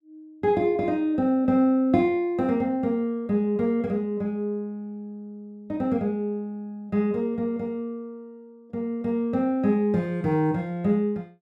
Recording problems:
none

